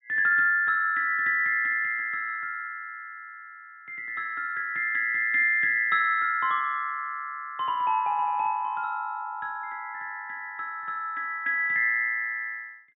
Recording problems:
low-pass filter; nothing above 4 kHz

